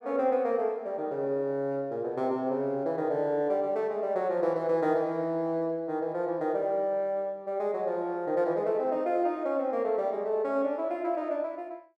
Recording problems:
none

